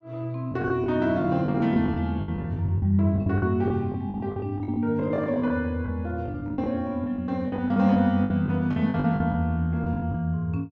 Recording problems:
packet loss; 14% of the sound replaced, filled with the last packet

